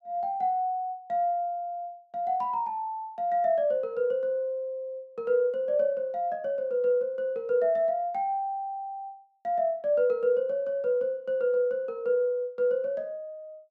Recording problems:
none

